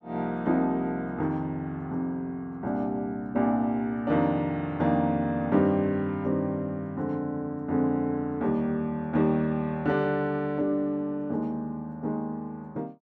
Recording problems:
none

